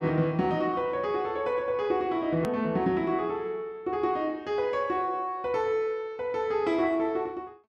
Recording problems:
hard cut with a click; at 2.5 s

